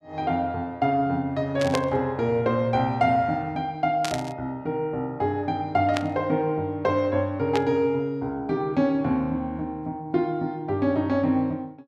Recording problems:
burst of static; 4 times, first at 1.5 s; peak 0 dB vs average level

